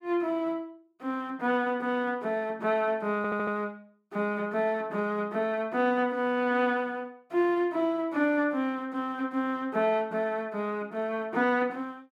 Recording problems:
stutter; at 3 s

